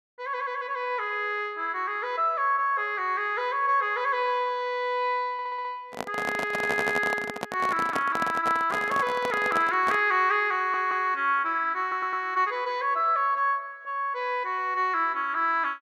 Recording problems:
audio stuttering; 4 times, first at 5.5 s
microphone handling noise; from 6 to 10 s; peak -1 dB vs average level

